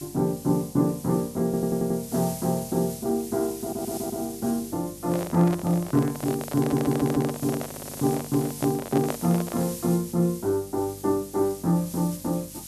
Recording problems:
electrical hum; 50 Hz, harmonics up to 650 Hz, SNR 23 dB
hiss; SNR 13 dB
audio stuttering; 4 times, first at 1.5 s
handling noise; from 5 to 10 s; peak 0 dB vs average level

